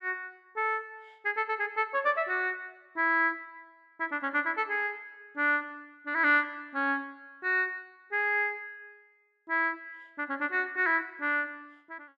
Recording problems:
none

